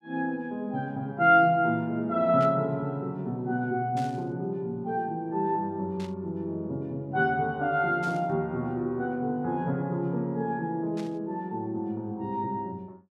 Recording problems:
burst of static; 5 times, first at 2.5 s; peak -12 dB vs average level

